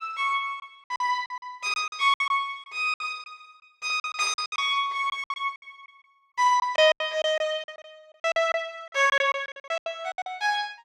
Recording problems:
lost packets; 16% of the sound replaced, filled with silence

